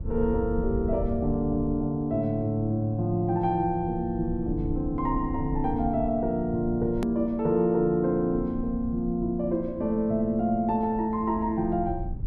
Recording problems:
rumble; below 96 Hz, SNR 11 dB
hard cut with a click; at 7 s

